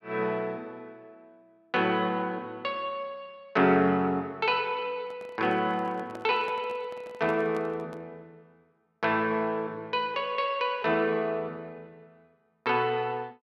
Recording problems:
handling noise; from 5 to 8 s; peak -10 dB vs average level

